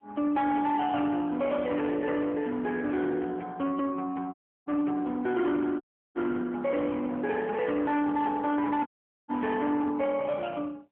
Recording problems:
telephone audio; 220 Hz to 3.3 kHz, AMR-NB
distorted audio; hard clipping, uneven, signal-to-distortion ratio 12 dB
dropout; at 4.5 s, at 6 s and at 9 s

